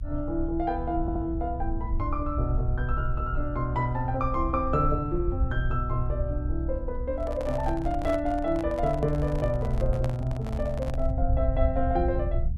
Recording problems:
rumble; below 68 Hz, SNR 3 dB
audio stuttering; at 1 s
microphone handling noise; from 7 to 11 s; peak -4 dB vs average level

